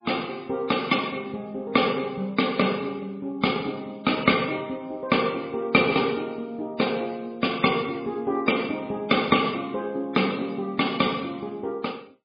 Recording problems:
lossy compression; MP3, log-spectral distance 5 dB, nothing above 4.8 kHz

